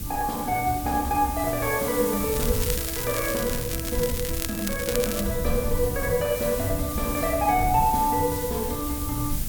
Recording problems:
hiss; slope 0 dB per octave, SNR 6 dB
low-frequency rumble; below 100 Hz, SNR 9 dB
crackling; from 2.5 to 5 s; loose cable, SNR 7 dB

